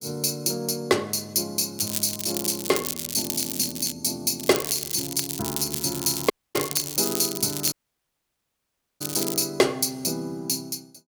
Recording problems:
crackling; from 2 to 4 s, from 4.5 to 7 s and from 7 to 9.5 s; loose cable, SNR 4 dB
audio cutting out; at 6.5 s and at 7.5 s for 1.5 s

